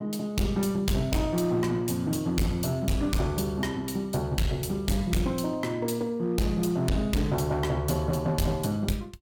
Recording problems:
distorted audio; hard clipping, uneven, signal-to-distortion ratio 7 dB

